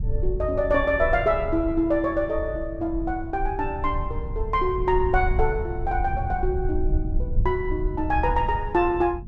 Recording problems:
rumble; below 76 Hz, SNR 6 dB

